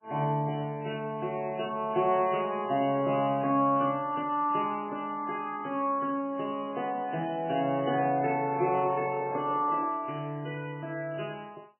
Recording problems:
lossy compression; MP3, log-spectral distance 3 dB, nothing above 2.5 kHz
microphone handling noise; from 8.5 to 10 s; peak -8 dB vs average level

